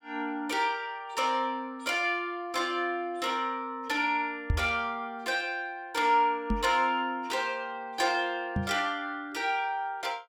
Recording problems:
knock on the microphone; at 4.5 s, at 6.5 s and at 8.5 s; peak +5 dB vs average level

